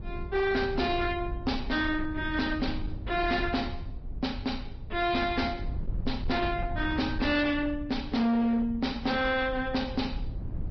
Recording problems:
treble cut off; nothing above 5.2 kHz
lossy codec; MP2, then Vorbis, log-spectral distance 3 dB
distortion; hard clipping, signal-to-distortion ratio 11 dB
rumble; below 98 Hz, SNR 9 dB

